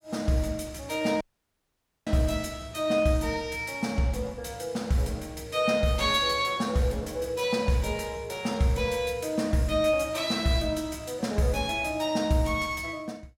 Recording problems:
dropout; at 1 s for 1 s

